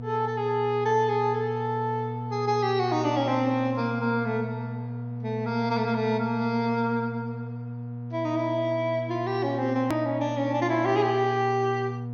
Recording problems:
treble cut off; nothing above 6.6 kHz
electrical hum; 60 Hz, harmonics up to 720 Hz, SNR 8 dB
edit click; at 10 s

